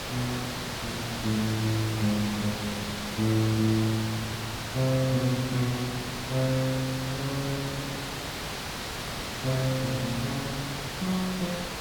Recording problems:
background hiss; slope -2 dB per octave, SNR 4 dB

